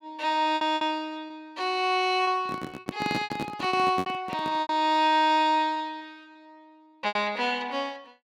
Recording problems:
lost packets; 11% of the sound replaced, filled with repeated pitch periods
handling noise; from 2.5 to 4.5 s; peak 0 dB vs average level

